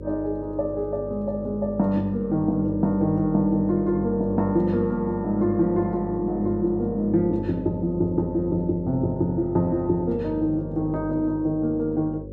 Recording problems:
hum; 50 Hz, harmonics up to 550 Hz, SNR 12 dB

